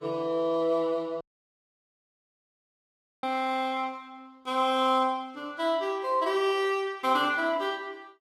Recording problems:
lossy codec; Vorbis, log-spectral distance 2 dB, nothing above 13.5 kHz
audio cutting out; at 1 s for 2 s

